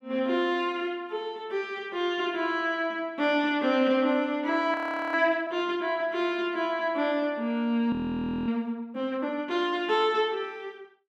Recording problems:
frozen audio; at 4.5 s and at 8 s for 0.5 s

